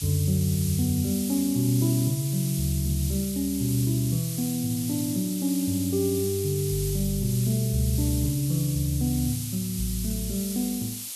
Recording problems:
hiss; SNR 7 dB

